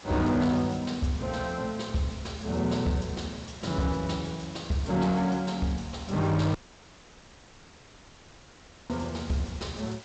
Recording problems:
lossy codec; G.722, log-spectral distance 8 dB, nothing above 7.6 kHz
distorted audio; hard clipping, signal-to-distortion ratio 12 dB
hiss; SNR 18 dB
dropout; at 6.5 s for 2.5 s

